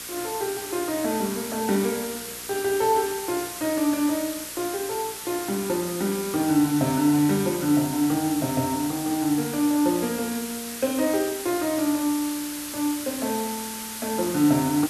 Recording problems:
hum; 60 Hz, harmonics up to 1.6 kHz, SNR 27 dB
background hiss; slope +2 dB per octave, SNR 8 dB

